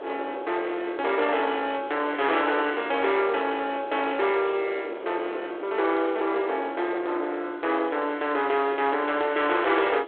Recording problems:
phone line; 300 Hz to 3.6 kHz, G.726
distortion; soft clipping, signal-to-distortion ratio 10 dB
hiss; SNR 29 dB
wind on the microphone; below 840 Hz, SNR 12 dB

